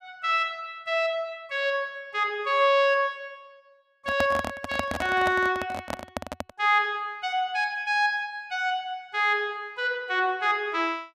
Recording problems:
handling noise; from 4 to 6.5 s; peak +1 dB vs average level

